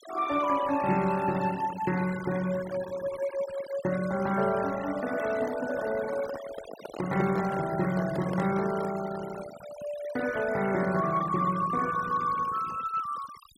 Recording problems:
noise reduction artefacts; signal-to-artefact ratio 14 dB
handling noise; from 5 to 9 s; peak -5 dB vs average level

